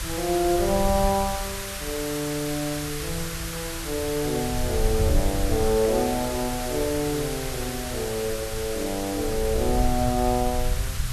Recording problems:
background hiss; SNR 6 dB
rumble; below 84 Hz, SNR 6 dB

